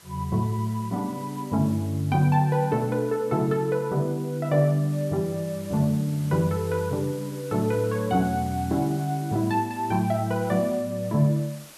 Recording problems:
hiss; slope -1 dB per octave, SNR 21 dB

